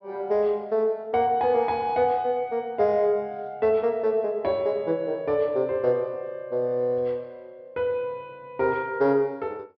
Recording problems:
treble cut off; nothing above 5.6 kHz

